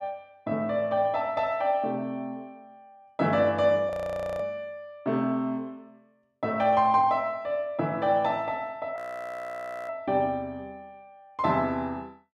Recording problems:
audio freezing; at 4 s and at 9 s for 1 s

